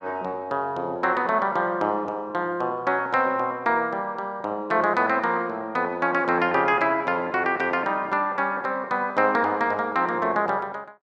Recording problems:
none

